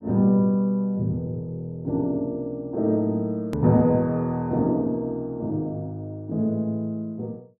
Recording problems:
click at an edit; at 3.5 s

